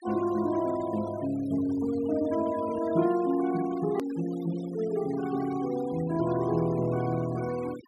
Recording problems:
noise reduction artefacts; signal-to-artefact ratio 18 dB
hard cut with a click; at 4 s

